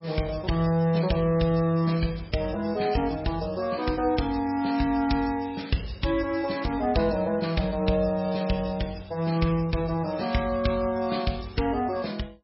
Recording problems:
lossy codec; MP3, log-spectral distance 5 dB, nothing above 5.5 kHz

